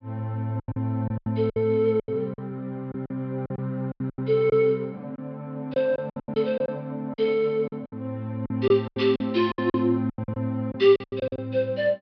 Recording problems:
low-pass filter; nothing above 5.5 kHz
packet loss; 15% of the sound replaced, filled with silence

